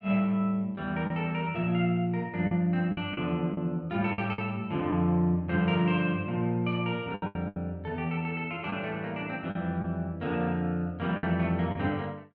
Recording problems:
packet loss; 6% of the sound replaced, filled with the last packet

